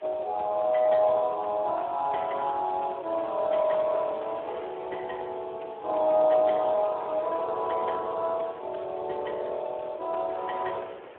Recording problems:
telephone audio; 320 Hz to 3 kHz, Speex
hiss; SNR 27 dB
wind noise; below 1 kHz, SNR 21 dB

